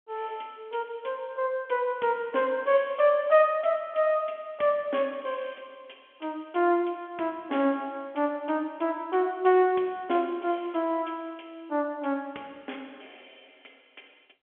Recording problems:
telephone audio; 240 Hz to 3.4 kHz, G.711

